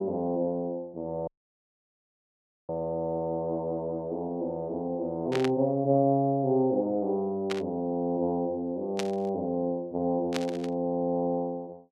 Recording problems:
audio cutting out; at 1.5 s for 1.5 s
burst of static; 4 times, first at 5.5 s; peak 0 dB vs average level

